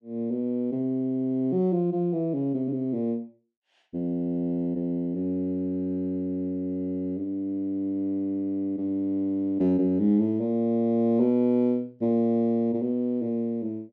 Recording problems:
none

